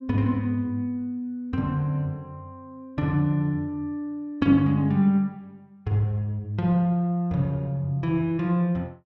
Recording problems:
none

